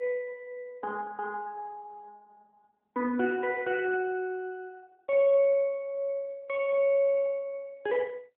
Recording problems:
phone line; 260 Hz to 3.9 kHz, AMR-NB

